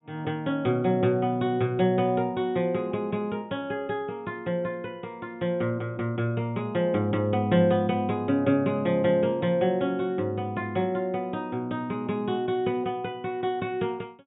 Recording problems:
treble missing; nothing above 4 kHz

